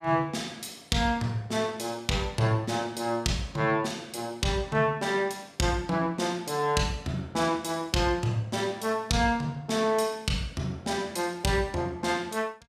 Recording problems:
none

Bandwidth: 15 kHz